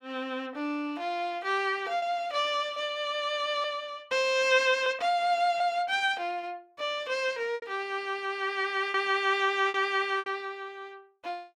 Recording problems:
packet loss; 4% of the sound replaced, filled with repeated pitch periods

